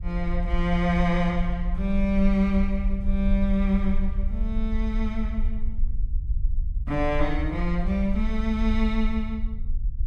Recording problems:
rumble; below 52 Hz, SNR 3 dB

